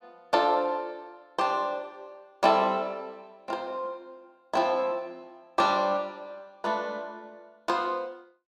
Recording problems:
none

